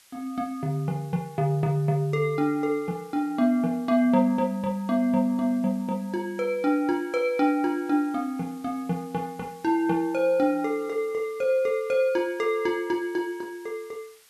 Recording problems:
background hiss; slope +2 dB per octave, SNR 28 dB

